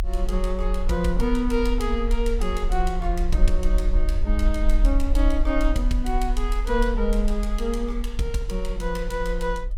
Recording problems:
low-frequency rumble; below 40 Hz, SNR 0 dB

